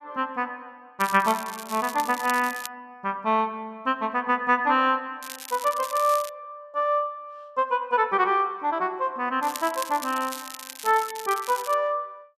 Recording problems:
crackle; from 1 to 2.5 s, from 5 to 6.5 s and from 9.5 to 12 s; loose cable, SNR 13 dB

